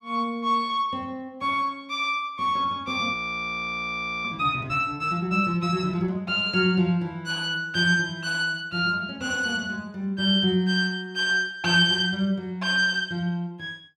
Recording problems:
audio freezing; at 3 s for 1 s

